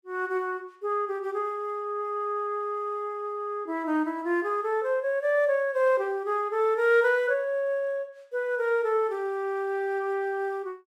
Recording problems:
none

